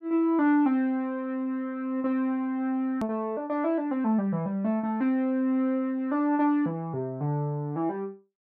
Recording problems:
hard cut with a click; at 3 s

